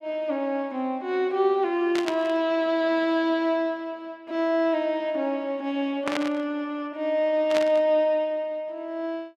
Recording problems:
burst of static; at 2 s, at 6 s and at 7.5 s; peak 0 dB vs average level

